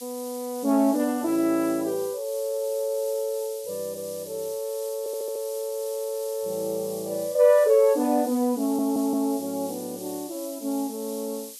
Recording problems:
hiss; SNR 14 dB
audio stuttering; at 5 s and at 8.5 s

